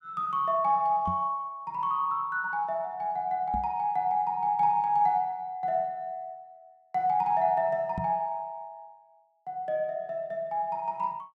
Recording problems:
microphone thump; at 1 s, at 3.5 s and at 8 s; peak -2 dB vs average level

